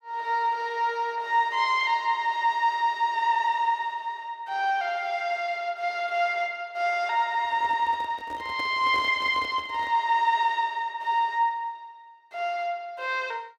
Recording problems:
handling noise; from 7.5 to 10 s; peak -10 dB vs average level

